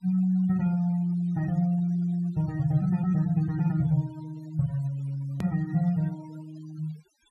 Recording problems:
denoising artefacts; signal-to-artefact ratio 22 dB
click at an edit; at 5.5 s

